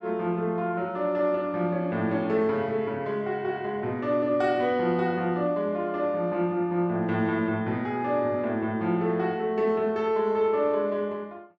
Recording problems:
none

